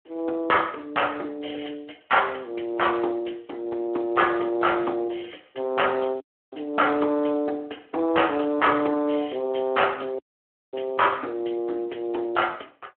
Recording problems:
phone line; 260 Hz to 3.2 kHz, Speex
dropout; at 6 s and at 10 s for 0.5 s

